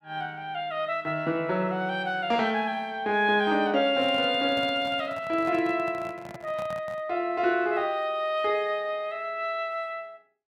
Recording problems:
handling noise; from 4 to 7 s; peak -10 dB vs average level

